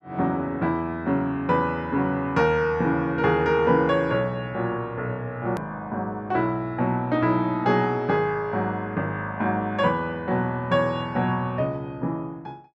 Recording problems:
edit click; at 5.5 s

